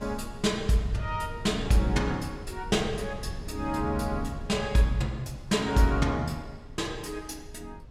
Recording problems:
wind noise; below 110 Hz, SNR 13 dB

